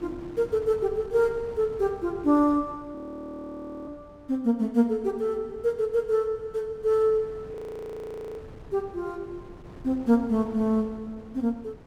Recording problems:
wind noise; below 450 Hz, SNR 21 dB
frozen audio; at 3 s for 1 s and at 7.5 s for 1 s

